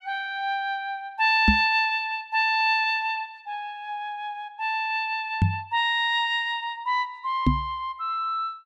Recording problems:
knock on the microphone; at 1.5 s, at 5.5 s and at 7.5 s; peak +8 dB vs average level

